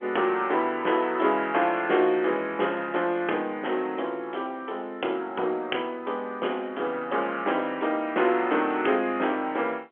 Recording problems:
telephone audio; 280 Hz to 3.3 kHz, G.711

